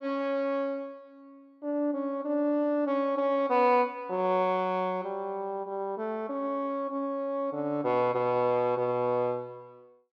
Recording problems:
none

